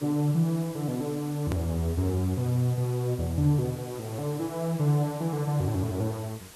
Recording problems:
hiss; slope -2 dB per octave, SNR 18 dB
hard cut with a click; at 1.5 s

